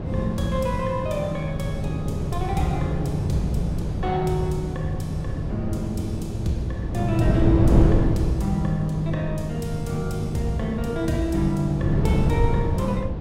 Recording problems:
wind noise; below 220 Hz, SNR 1 dB

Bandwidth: 16.5 kHz